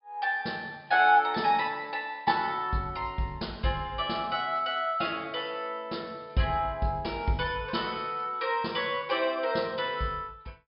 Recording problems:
treble missing; nothing above 5.5 kHz

